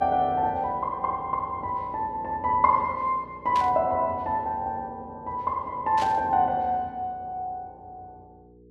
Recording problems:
hum; 60 Hz, harmonics up to 480 Hz, SNR 24 dB
static burst; at 3.5 s and at 6 s; peak -6 dB vs average level

